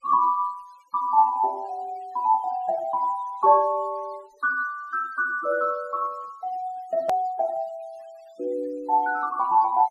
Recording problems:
denoising artefacts; signal-to-artefact ratio 28 dB
edit click; at 7 s

